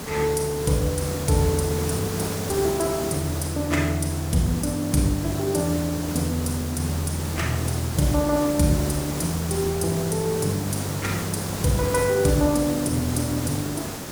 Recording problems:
background hiss; SNR 6 dB

